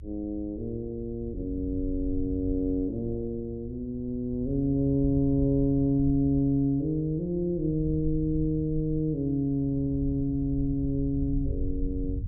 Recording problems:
rumble; below 80 Hz, SNR 10 dB

